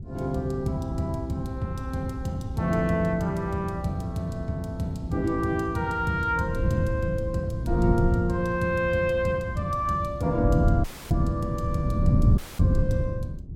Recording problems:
wind noise; below 150 Hz, SNR 2 dB
dropout; at 11 s and at 12 s

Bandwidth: 16.5 kHz